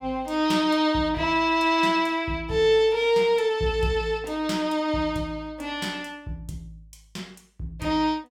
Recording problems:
none

